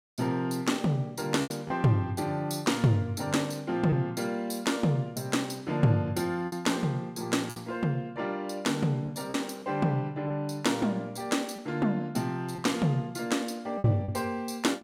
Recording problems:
packet loss; 3% of the sound replaced, filled with repeated pitch periods

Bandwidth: 16 kHz